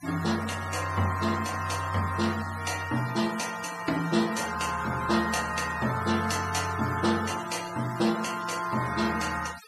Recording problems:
denoising artefacts; signal-to-artefact ratio 12 dB

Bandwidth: 14.5 kHz